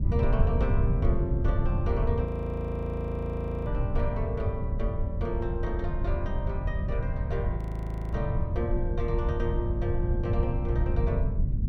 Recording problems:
rumble; below 110 Hz, SNR -5 dB
frozen audio; at 2.5 s for 1.5 s and at 7.5 s for 0.5 s

